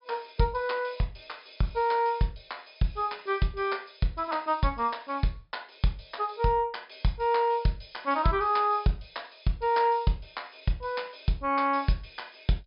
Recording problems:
treble cut off; nothing above 5.5 kHz

